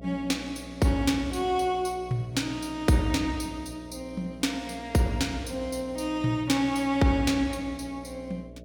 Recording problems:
mains hum; 60 Hz, harmonics up to 660 Hz, SNR 17 dB

